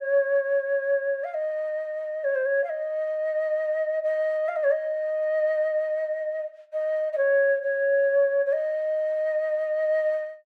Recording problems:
none

